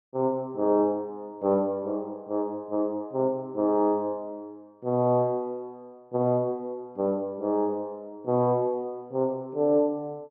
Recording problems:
none

